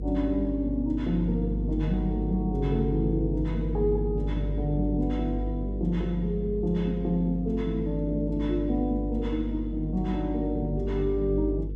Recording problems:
hum; 50 Hz, harmonics up to 500 Hz, SNR 4 dB

